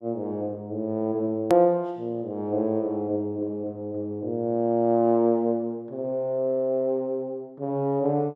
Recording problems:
edit click; at 1.5 s

